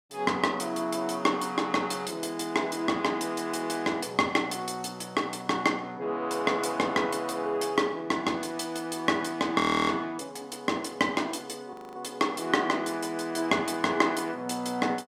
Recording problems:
frozen audio; at 9.5 s and at 12 s

